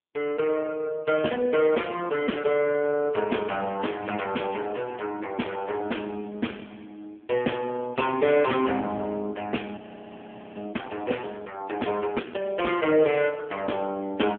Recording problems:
phone line; 240 Hz to 3.3 kHz, AMR-NB
audio freezing; at 10 s for 1 s

